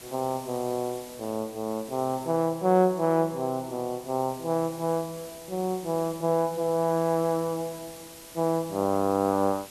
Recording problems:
hiss; slope -1 dB per octave, SNR 17 dB

